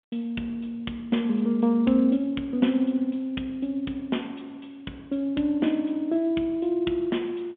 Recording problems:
telephone audio; 130 Hz to 3.5 kHz, G.711

